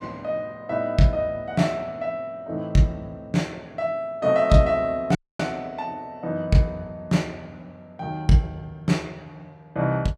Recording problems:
dropout; at 5 s

